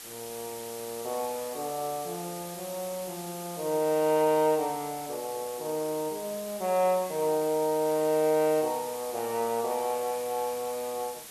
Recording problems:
hiss; slope 0 dB per octave, SNR 12 dB

